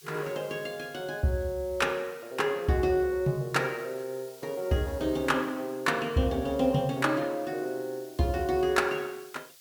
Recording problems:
background hiss; slope +4 dB per octave, SNR 22 dB

